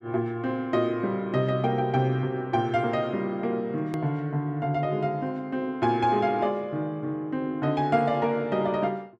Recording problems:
edit click; at 4 s

